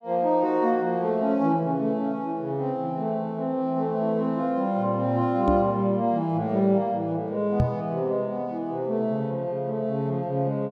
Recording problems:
microphone thump; at 5.5 s and at 7.5 s; peak +5 dB vs average level

